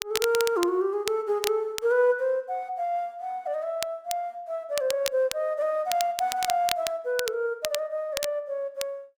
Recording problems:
crackle; vinyl, SNR 8 dB

